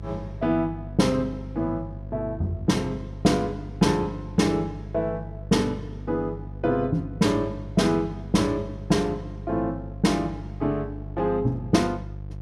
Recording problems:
electrical hum; 50 Hz, harmonics up to 550 Hz, SNR 12 dB

